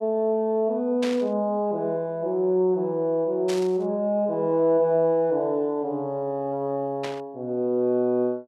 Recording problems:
static burst; at 1 s, at 3.5 s and at 7 s; peak -5 dB vs average level

